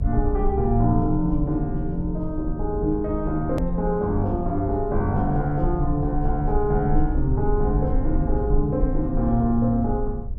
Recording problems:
electrical hum; 50 Hz, harmonics up to 600 Hz, SNR 23 dB
rumble; below 60 Hz, strongest tone 22 Hz, SNR 5 dB
hard cut with a click; at 3.5 s

